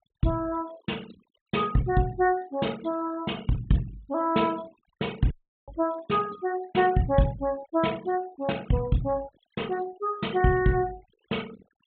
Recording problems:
low-pass filter; nothing above 4 kHz
denoising artefacts; signal-to-artefact ratio 21 dB
dropout; at 5.5 s

